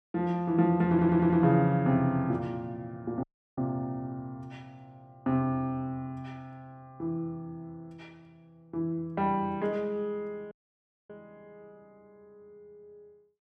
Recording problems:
audio stuttering; at 1 s
audio cutting out; at 3 s and at 11 s for 0.5 s

